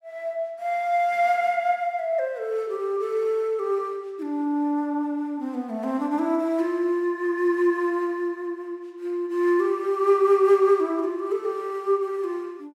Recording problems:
none

